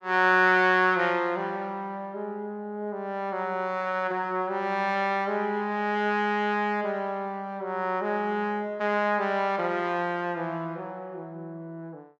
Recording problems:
none

